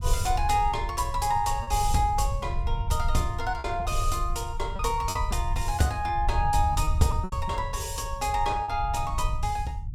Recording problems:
low-frequency rumble; below 82 Hz, SNR 4 dB
lost packets; 5% of the sound replaced, filled with repeated pitch periods

